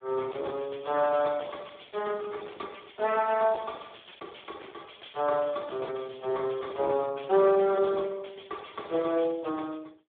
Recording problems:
phone line; 300 Hz to 2.1 kHz, Speex
distorted audio; soft clipping, signal-to-distortion ratio 11 dB

